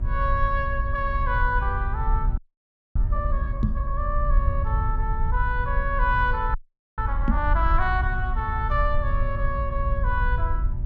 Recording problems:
treble missing; nothing above 8 kHz
electrical hum; 60 Hz, harmonics up to 1.3 kHz, SNR 15 dB
low-frequency rumble; below 64 Hz, SNR 0 dB
frozen audio; at 2.5 s for 0.5 s and at 6.5 s
microphone bump; at 3.5 s and at 7.5 s; peak +7 dB vs average level

